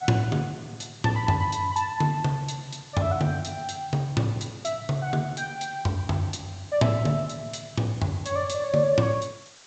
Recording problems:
treble missing; nothing above 8 kHz
hiss; slope 0 dB per octave, SNR 22 dB

